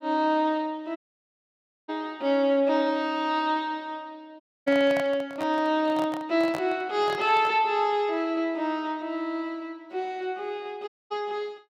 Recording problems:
dropout; at 1 s for 1 s, at 4.5 s and at 11 s
microphone handling noise; from 4.5 to 7.5 s; peak -3 dB vs average level

